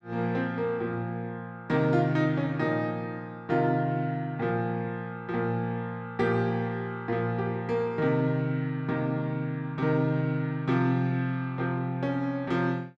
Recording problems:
none

